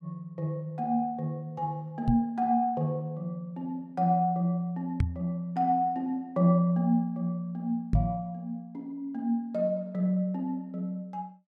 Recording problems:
microphone thump; at 2 s, at 5 s and at 8 s; peak +8 dB vs average level

